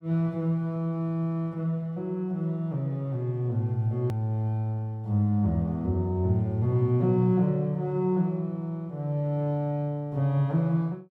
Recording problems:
hard cut with a click; at 4 s

